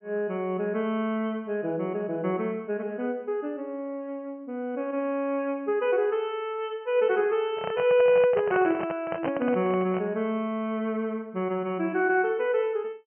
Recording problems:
treble missing; nothing above 3.1 kHz
handling noise; from 7.5 to 10 s; peak -1 dB vs average level

